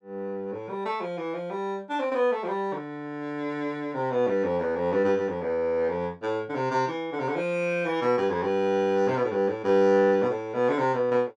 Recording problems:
none

